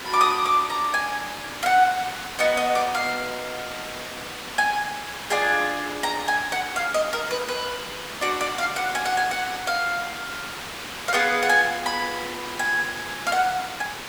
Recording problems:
hiss; SNR 9 dB

